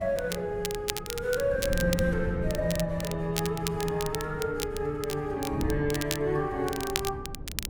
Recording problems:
wind noise; below 190 Hz, SNR 8 dB
crackling; vinyl, SNR 7 dB

